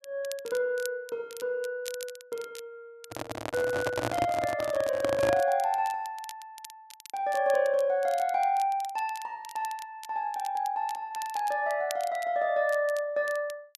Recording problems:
crackle; vinyl, SNR 18 dB
handling noise; from 3 to 5.5 s; peak +3 dB vs average level

